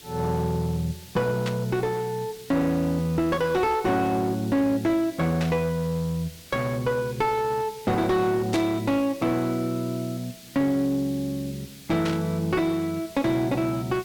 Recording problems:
distorted audio; hard clipping, uneven, signal-to-distortion ratio 11 dB
background hiss; SNR 19 dB
static burst; 4 times, first at 1.5 s; peak -3 dB vs average level

